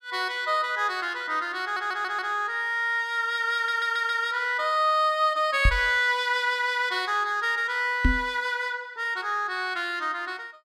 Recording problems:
stutter; at 1.5 s and at 3.5 s
knock on the microphone; at 5.5 s and at 8 s; peak +6 dB vs average level

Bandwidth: 14.5 kHz